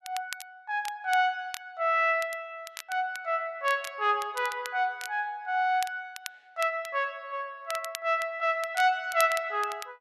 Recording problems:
crackling; vinyl, SNR 14 dB

